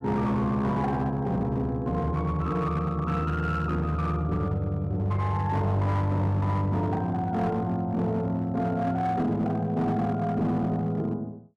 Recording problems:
distorted audio; hard clipping, signal-to-distortion ratio 12 dB

